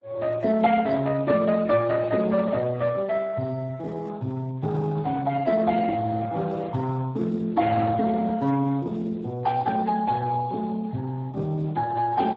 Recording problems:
codec artefacts; MP3, then Speex, log-spectral distance 3 dB

